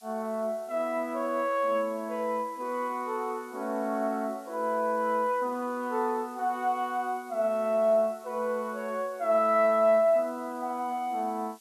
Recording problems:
hiss; slope +5 dB per octave, SNR 27 dB

